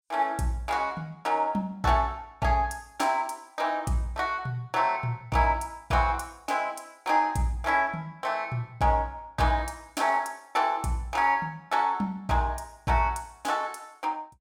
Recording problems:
none

